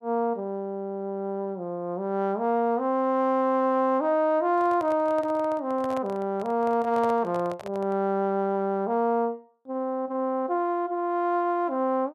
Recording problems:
handling noise; from 4.5 to 8 s; peak -8 dB vs average level

